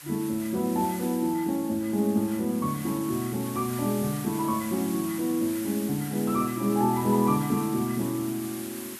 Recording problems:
background hiss; SNR 12 dB

